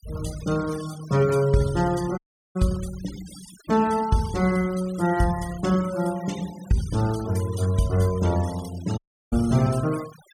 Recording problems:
denoising artefacts; signal-to-artefact ratio 17 dB
audio cutting out; at 2 s and at 9 s

